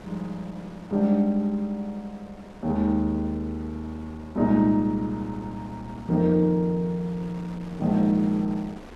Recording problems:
wind on the microphone; below 970 Hz, SNR 21 dB

